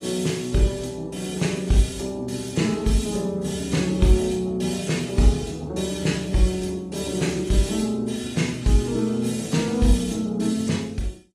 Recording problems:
codec artefacts; AAC, log-spectral distance 4 dB, nothing above 12 kHz

